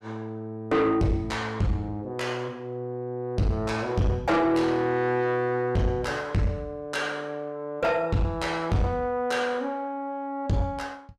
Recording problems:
distortion; soft clipping, signal-to-distortion ratio 6 dB

